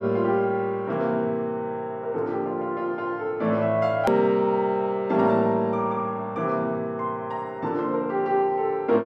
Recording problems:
edit click; at 4 s

